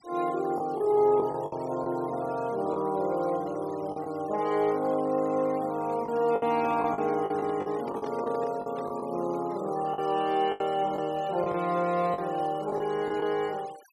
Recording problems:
noise reduction artefacts; signal-to-artefact ratio 22 dB
packet loss; 7% of the sound replaced, filled with the last packet
handling noise; from 6.5 to 9 s; peak -8 dB vs average level

